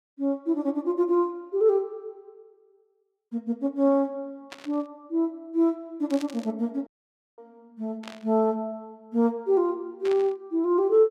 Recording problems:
burst of static; 4 times, first at 4.5 s; peak -9 dB vs average level
dropout; at 7 s for 0.5 s

